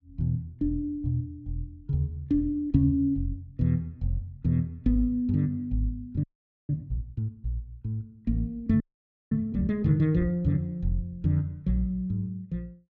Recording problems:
frozen audio; at 6 s and at 9 s for 0.5 s

